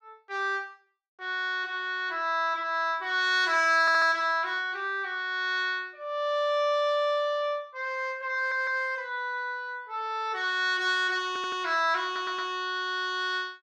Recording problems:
audio stuttering; 4 times, first at 4 s

